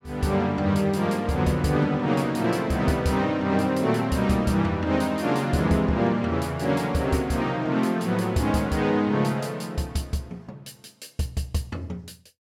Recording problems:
none

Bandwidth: 17 kHz